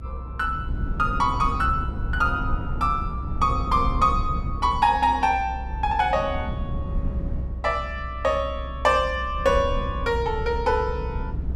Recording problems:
low-frequency rumble; below 110 Hz, SNR 7 dB

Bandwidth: 13.5 kHz